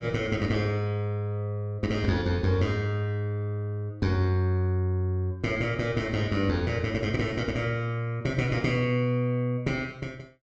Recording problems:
none

